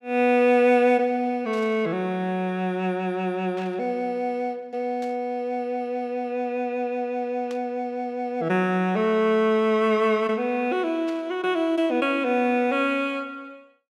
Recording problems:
burst of static; 5 times, first at 1.5 s; peak -15 dB vs average level

